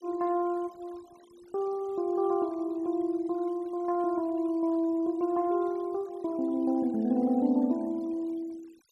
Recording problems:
denoising artefacts; signal-to-artefact ratio 27 dB

